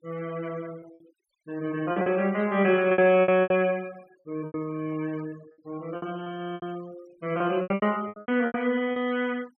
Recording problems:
noise reduction artefacts; signal-to-artefact ratio 24 dB
lost packets; 12% of the sound replaced, filled with repeated pitch periods

